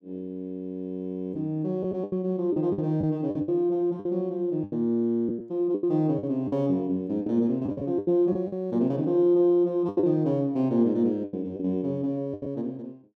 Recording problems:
lost packets; 9% of the sound replaced, filled with the last packet

